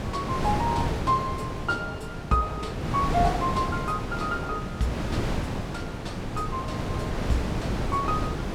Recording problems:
wind noise; below 570 Hz, SNR 1 dB

